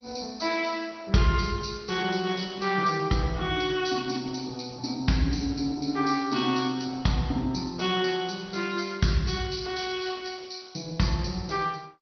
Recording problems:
codec artefacts; MP2, then Opus, log-spectral distance 6 dB, nothing above 6 kHz

